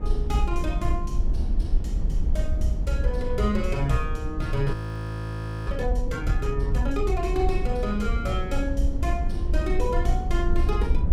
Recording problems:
rumble; below 62 Hz, SNR 0 dB
frozen audio; at 4.5 s for 1 s

